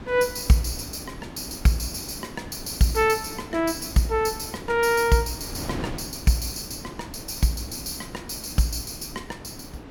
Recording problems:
wind on the microphone; below 580 Hz, SNR 13 dB

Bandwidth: 18 kHz